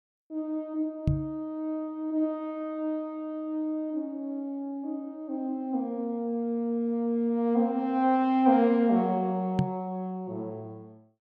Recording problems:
microphone bump; at 1 s and at 9.5 s; peak +7 dB vs average level

